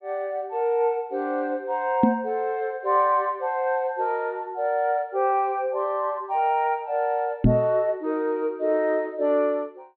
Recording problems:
low-pass filter; nothing above 4.3 kHz
knock on the microphone; at 2 s and at 7.5 s; peak +9 dB vs average level

